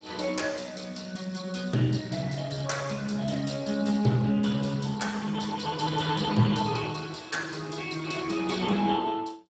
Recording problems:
codec artefacts; Speex, log-spectral distance 6 dB, nothing above 7.6 kHz

